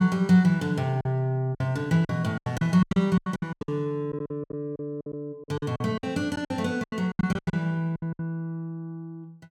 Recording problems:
packet loss; 16% of the sound replaced, filled with silence

